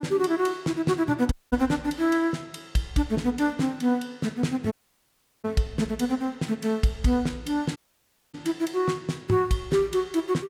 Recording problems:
dropout; at 1.5 s, at 4.5 s for 0.5 s and at 8 s for 0.5 s

